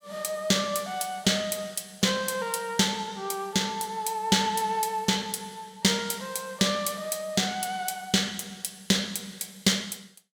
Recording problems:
none

